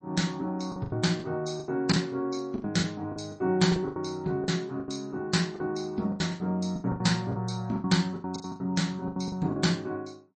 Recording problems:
lossy codec; MP3, log-spectral distance 3 dB, nothing above 8.2 kHz
packet loss; 16% of the sound replaced, filled with the last packet

